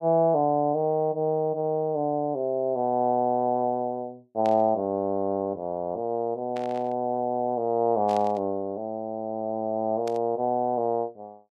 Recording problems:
static burst; 4 times, first at 4.5 s; peak -12 dB vs average level

